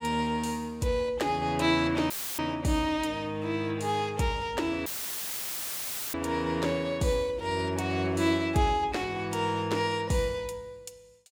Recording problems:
dropout; at 2 s and at 5 s for 1.5 s; filled with static

